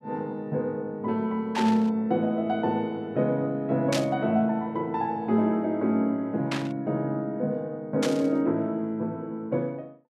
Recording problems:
static burst; 4 times, first at 1.5 s; peak +1 dB vs average level

